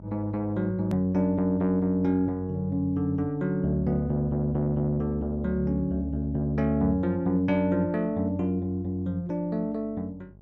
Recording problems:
electrical hum; 50 Hz, harmonics up to 800 Hz, SNR 23 dB
edit click; at 1 s

